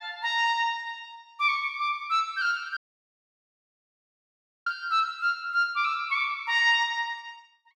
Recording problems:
audio cutting out; at 3 s for 2 s

